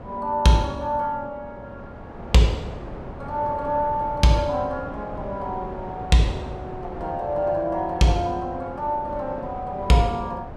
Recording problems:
wind noise; below 660 Hz, SNR 13 dB

